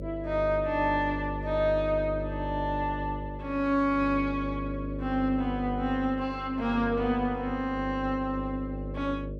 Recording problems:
mains hum; 50 Hz, harmonics up to 600 Hz, SNR 8 dB

